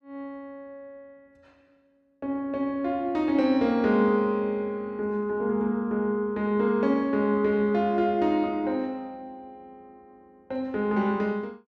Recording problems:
none

